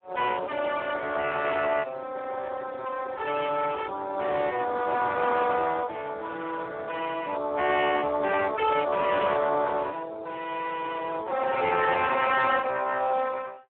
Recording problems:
phone line; 280 Hz to 3.3 kHz, Speex

